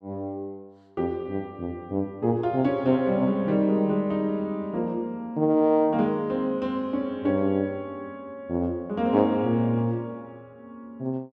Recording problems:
none

